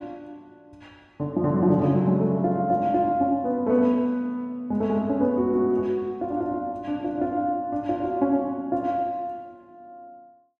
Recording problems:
none

